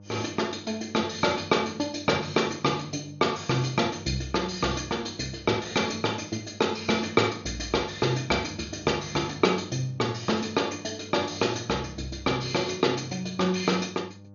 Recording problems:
lossy codec; MP2, log-spectral distance 6 dB, nothing above 6.7 kHz
electrical hum; 50 Hz, harmonics up to 900 Hz, SNR 21 dB

